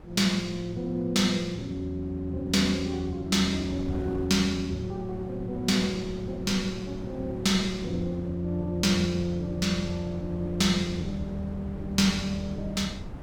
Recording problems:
wind noise; below 280 Hz, SNR 14 dB

